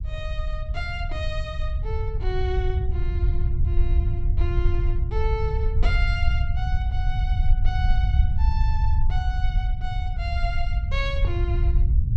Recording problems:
rumble; below 74 Hz, SNR -8 dB

